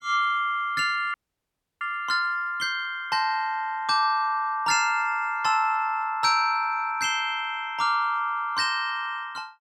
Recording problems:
frozen audio; at 1 s for 0.5 s

